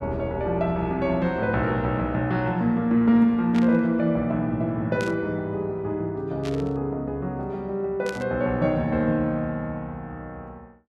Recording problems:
static burst; 4 times, first at 3.5 s; peak -8 dB vs average level

